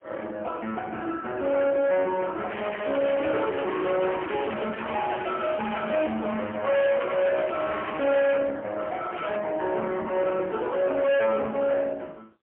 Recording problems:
telephone audio; 300 Hz to 3.3 kHz, AMR-NB, then MP3
distorted audio; hard clipping, signal-to-distortion ratio 7 dB
crackle; from 2.5 to 6 s, from 7 to 8.5 s and at 9 s; loose cable, SNR 12 dB

